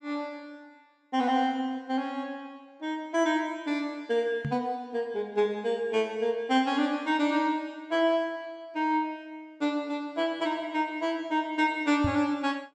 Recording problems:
knock on the microphone; at 4.5 s and at 12 s; peak +2 dB vs average level

